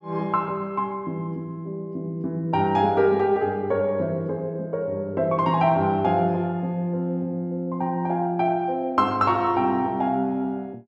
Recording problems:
none

